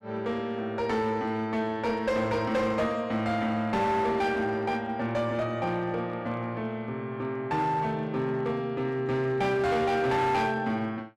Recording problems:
distorted audio; hard clipping, uneven, signal-to-distortion ratio 11 dB

